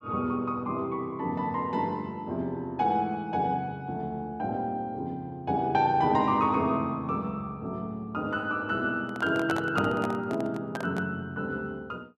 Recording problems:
microphone handling noise; from 9 to 11 s; peak +1 dB vs average level

